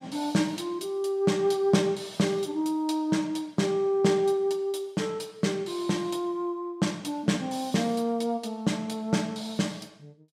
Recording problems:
none

